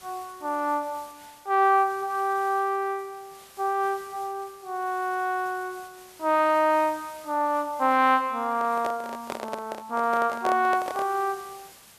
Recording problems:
hiss; slope -1 dB per octave, SNR 23 dB
microphone handling noise; from 8.5 to 11 s; peak -1 dB vs average level

